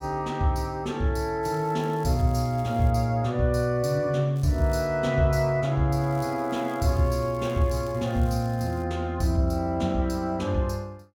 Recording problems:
crackle; from 1.5 to 3 s, at 4.5 s and from 6 to 9 s; loose cable, SNR 27 dB

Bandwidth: 17.5 kHz